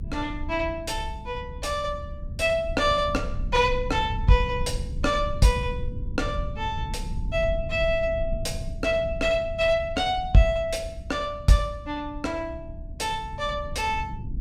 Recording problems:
rumble; below 96 Hz, SNR 9 dB

